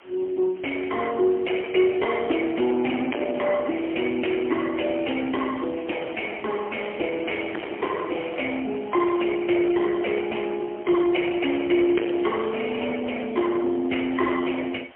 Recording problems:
phone line; 260 Hz to 3.1 kHz, AMR-NB, then MP3
distorted audio; soft clipping, signal-to-distortion ratio 8 dB
background hiss; SNR 24 dB

